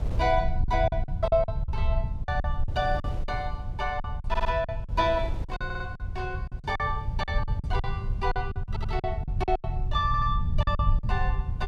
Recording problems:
rumble; below 90 Hz, SNR 1 dB
wind on the microphone; below 190 Hz, SNR 15 dB
packet loss; 13% of the sound replaced, filled with silence
audio stuttering; 4 times, first at 4.5 s

